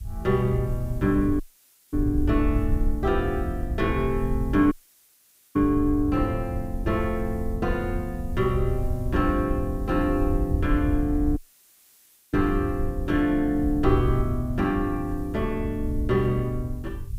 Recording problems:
hiss; slope +1 dB per octave, SNR 29 dB
rumble; below 84 Hz, SNR 5 dB
dropout; at 1.5 s for 0.5 s, at 4.5 s for 1 s and at 11 s for 1 s

